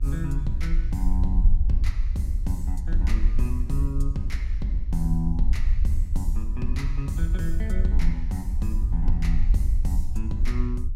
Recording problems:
electrical hum; 60 Hz, harmonics up to 900 Hz, SNR 27 dB
low-frequency rumble; below 54 Hz, strongest tone 22 Hz, SNR -5 dB

